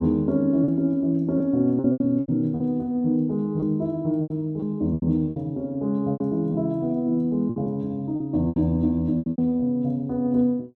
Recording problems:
lost packets; 10% of the sound replaced, filled with repeated pitch periods

